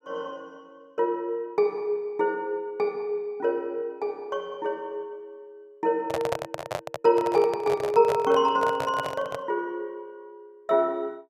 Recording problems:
microphone handling noise; from 6 to 9.5 s; peak +2 dB vs average level

